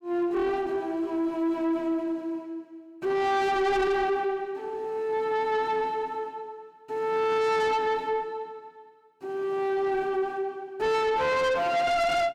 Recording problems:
distortion; soft clipping, signal-to-distortion ratio 7 dB

